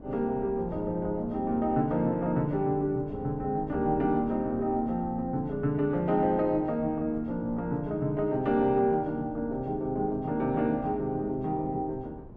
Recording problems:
wind noise; below 260 Hz, SNR 17 dB

